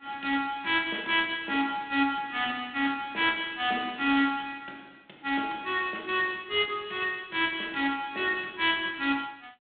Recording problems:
phone line; 220 Hz to 3.7 kHz, G.726

